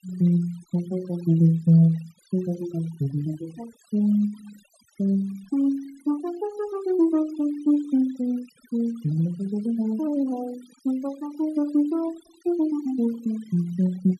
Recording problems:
denoising artefacts; signal-to-artefact ratio 24 dB

